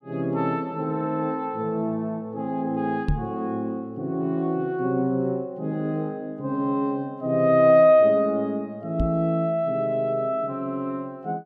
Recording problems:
microphone bump; at 3 s and at 9 s; peak +3 dB vs average level

